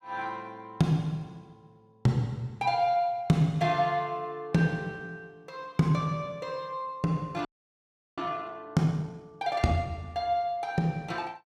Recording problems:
frozen audio; at 7.5 s for 0.5 s

